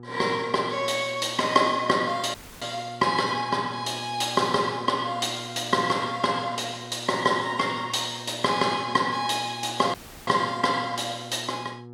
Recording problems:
hum; 60 Hz, harmonics up to 960 Hz, SNR 17 dB
dropout; at 2.5 s and at 10 s

